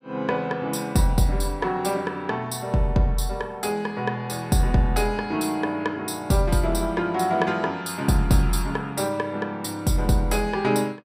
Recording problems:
none

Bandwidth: 15.5 kHz